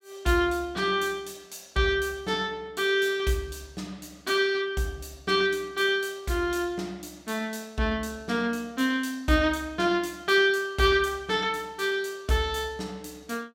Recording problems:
none

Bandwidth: 16.5 kHz